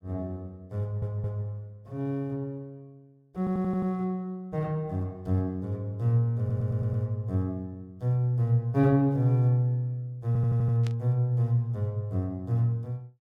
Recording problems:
audio stuttering; 4 times, first at 1 s
static burst; at 11 s; peak -11 dB vs average level

